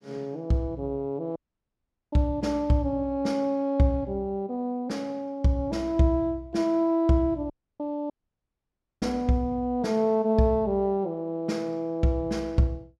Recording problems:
dropout; at 1.5 s for 1 s, at 7.5 s and at 8 s for 1 s

